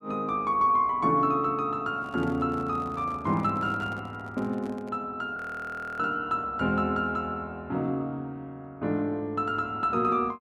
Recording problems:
microphone handling noise; from 2 to 5 s; peak -11 dB vs average level
audio freezing; at 5.5 s for 0.5 s

